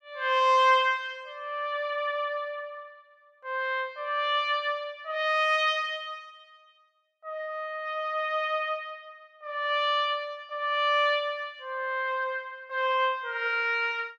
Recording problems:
none

